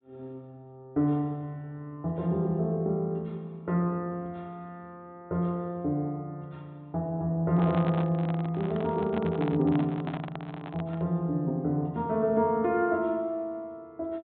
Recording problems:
treble cut off; nothing above 4 kHz
microphone handling noise; from 7.5 to 11 s; peak -3 dB vs average level

